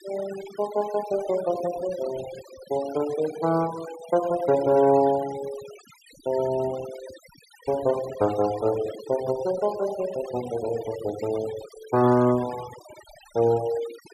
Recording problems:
noise reduction artefacts; signal-to-artefact ratio 17 dB

